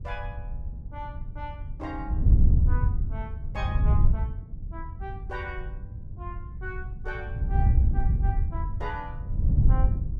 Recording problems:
wind noise; below 88 Hz, SNR -13 dB

